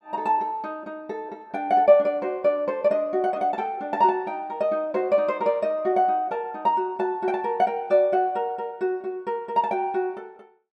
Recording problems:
none

